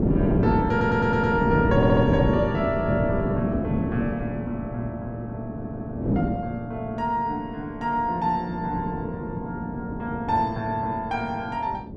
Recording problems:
wind noise; below 340 Hz, SNR 1 dB
audio stuttering; at 0.5 s, at 2 s and at 5.5 s

